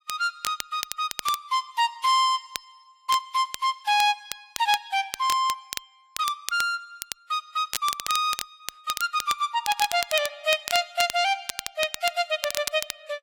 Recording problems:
codec artefacts; AAC, log-spectral distance 2 dB, nothing above 14.7 kHz
crackle; vinyl, SNR 9 dB

